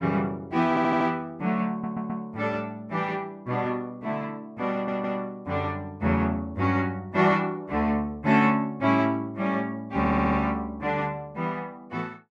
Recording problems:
audio stuttering; 4 times, first at 0.5 s

